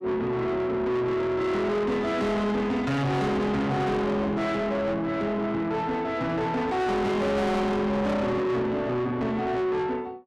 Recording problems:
distorted audio; soft clipping, signal-to-distortion ratio 7 dB

